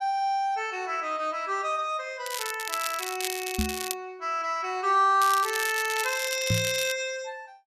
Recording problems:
crackle; from 2.5 to 4 s and from 5 to 7 s; loose cable, SNR 6 dB
microphone thump; at 3.5 s and at 6.5 s; peak +4 dB vs average level

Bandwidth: 14 kHz